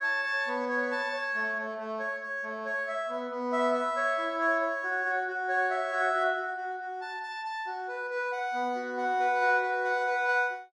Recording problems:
none

